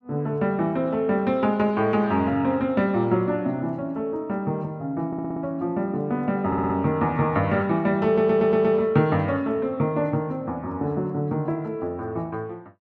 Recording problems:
audio stuttering; at 5 s, at 6.5 s and at 8 s

